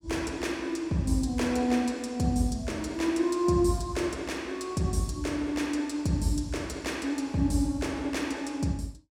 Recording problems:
none

